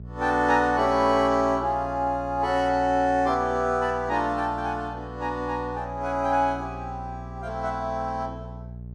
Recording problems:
mains hum; 60 Hz, harmonics up to 480 Hz, SNR 15 dB

